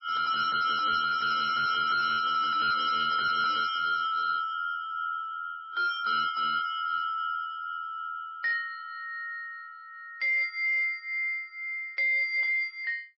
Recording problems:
lossy compression; MP3, log-spectral distance 2 dB, nothing above 4.8 kHz
distortion; hard clipping, signal-to-distortion ratio 11 dB

